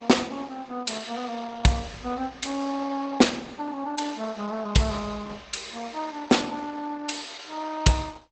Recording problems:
lossy codec; Opus, log-spectral distance 5 dB, nothing above 8 kHz

